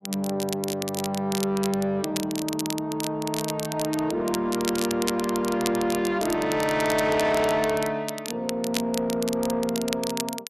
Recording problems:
distortion; soft clipping, signal-to-distortion ratio 10 dB
crackle; vinyl, SNR 8 dB

